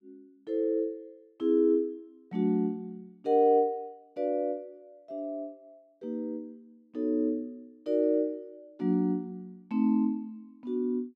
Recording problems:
none

